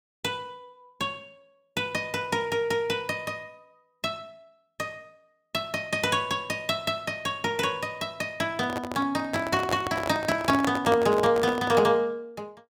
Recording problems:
microphone handling noise; from 8.5 to 12 s; peak +2 dB vs average level

